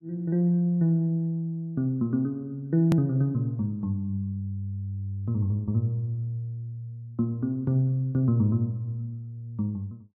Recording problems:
hard cut with a click; at 3 s

